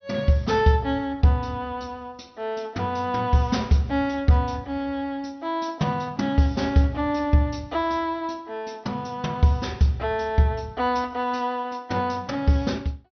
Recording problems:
treble cut off; nothing above 6.1 kHz

